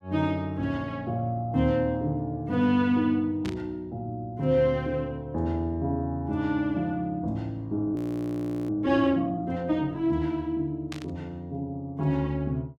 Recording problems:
burst of static; at 3.5 s and at 11 s; peak -7 dB vs average level
frozen audio; at 8 s for 0.5 s

